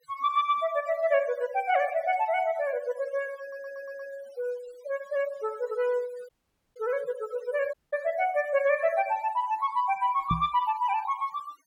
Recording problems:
noise reduction artefacts; signal-to-artefact ratio 20 dB
audio stuttering; at 3.5 s
dropout; at 6.5 s and at 7.5 s
microphone bump; at 10 s; peak +2 dB vs average level

